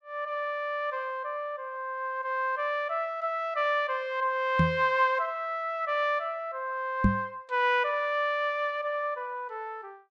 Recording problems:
knock on the microphone; at 4.5 s and at 7 s; peak +9 dB vs average level

